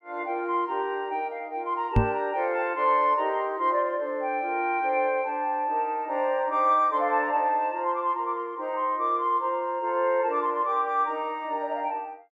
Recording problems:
knock on the microphone; at 2 s; peak +8 dB vs average level

